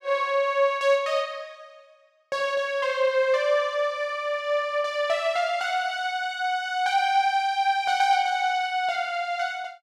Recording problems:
none

